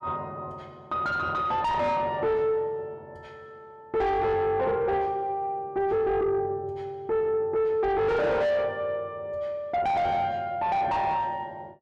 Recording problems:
distortion; soft clipping, signal-to-distortion ratio 6 dB

